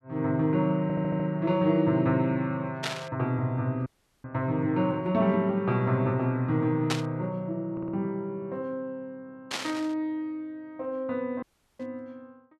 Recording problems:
audio stuttering; at 1 s and at 7.5 s
burst of static; 4 times, first at 3 s; peak +3 dB vs average level
audio cutting out; at 4 s and at 11 s

